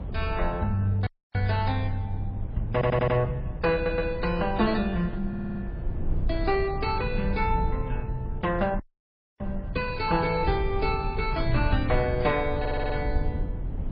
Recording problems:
lossy compression; MP3, then MP2, log-spectral distance 2 dB, nothing above 4.5 kHz
low-frequency rumble; below 96 Hz, SNR 6 dB
wind noise; below 590 Hz, SNR 20 dB
dropout; at 1 s and at 9 s for 0.5 s
audio stuttering; 4 times, first at 2.5 s

